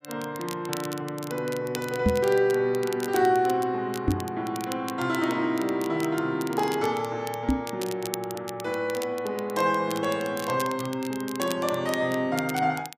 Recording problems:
crackling; vinyl, SNR 14 dB
microphone thump; at 2 s, at 4 s and at 7.5 s; peak +7 dB vs average level

